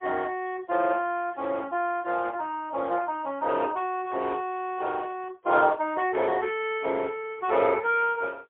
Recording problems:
telephone audio; 300 Hz to 3.5 kHz, AMR-NB, then MP3

